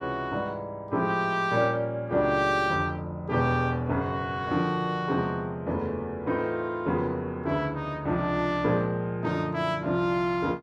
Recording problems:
none

